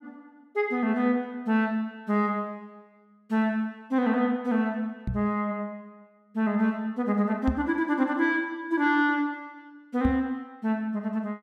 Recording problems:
knock on the microphone; at 5 s, at 7.5 s and at 10 s; peak +1 dB vs average level

